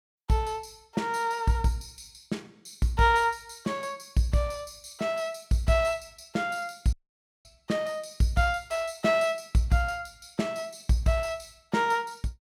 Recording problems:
audio cutting out; at 7 s for 0.5 s

